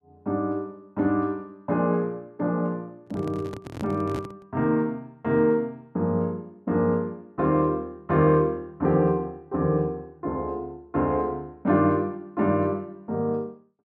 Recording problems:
handling noise; from 3 to 4.5 s; peak -5 dB vs average level

